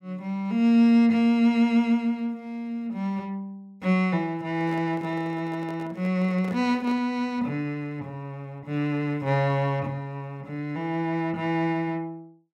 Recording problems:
microphone handling noise; from 4.5 to 7 s; peak -12 dB vs average level

